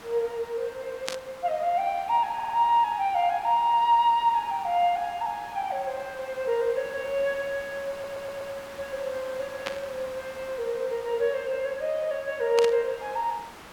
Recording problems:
hiss; SNR 17 dB
static burst; at 1 s, at 9.5 s and at 13 s; peak +1 dB vs average level
audio stuttering; at 2.5 s and at 8 s

